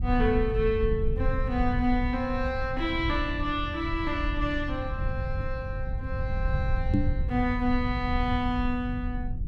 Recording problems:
low-frequency rumble; below 92 Hz, SNR 3 dB
microphone bump; at 7 s; peak +8 dB vs average level

